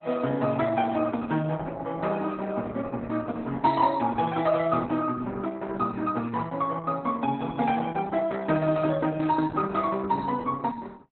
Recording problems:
lossy compression; Opus, log-spectral distance 3 dB, nothing above 4 kHz

